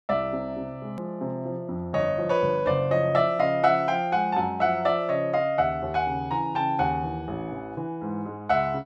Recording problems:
edit click; at 1 s

